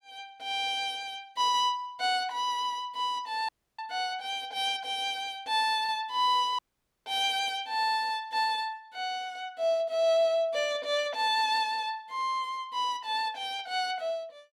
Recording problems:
audio cutting out; at 3.5 s and at 6.5 s

